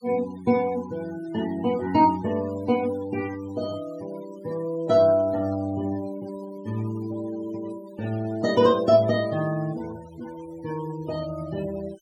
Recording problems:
noise reduction artefacts; signal-to-artefact ratio 19 dB

